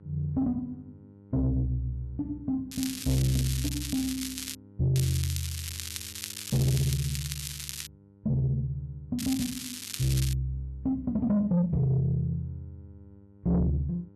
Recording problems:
distorted audio; soft clipping, signal-to-distortion ratio 10 dB
hum; 50 Hz, harmonics up to 900 Hz, SNR 25 dB
crackle; from 2.5 to 4.5 s, from 5 to 8 s and from 9 to 10 s; loose cable, SNR 7 dB

